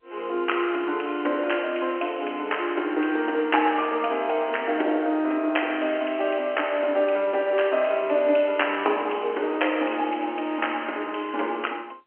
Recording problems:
phone line; 260 Hz to 3.2 kHz, G.711

